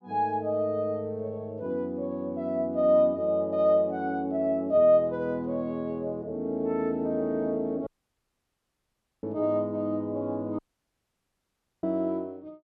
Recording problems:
dropout; at 8 s for 1.5 s and at 11 s for 1 s

